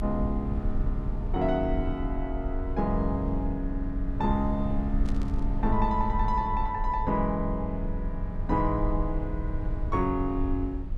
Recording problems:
rumble; below 62 Hz, strongest tone 28 Hz, SNR 3 dB
burst of static; at 5 s; peak -13 dB vs average level

